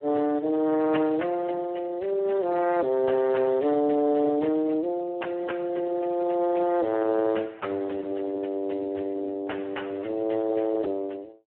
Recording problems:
phone line; 260 Hz to 3.1 kHz, Speex

